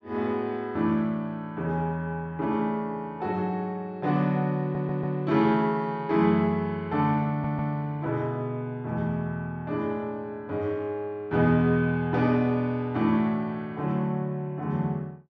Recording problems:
stutter; at 4.5 s and at 7.5 s

